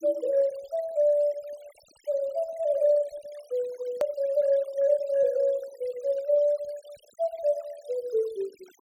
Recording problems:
noise reduction artefacts; signal-to-artefact ratio 27 dB
edit click; at 4 s

